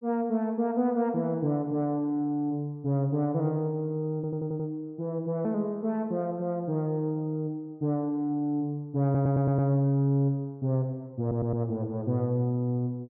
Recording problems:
audio stuttering; at 4 s, at 9 s and at 11 s

